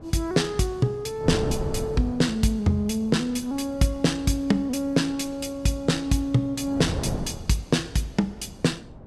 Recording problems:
wind on the microphone; below 360 Hz, SNR 11 dB

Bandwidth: 14.5 kHz